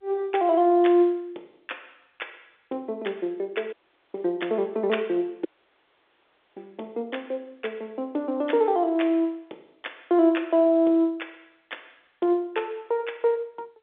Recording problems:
phone line; 280 Hz to 3.7 kHz, G.711
dropout; at 3.5 s and at 5.5 s for 1 s

